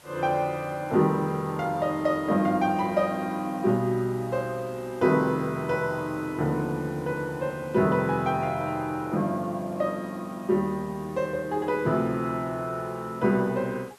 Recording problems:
hiss; slope -3 dB per octave, SNR 25 dB

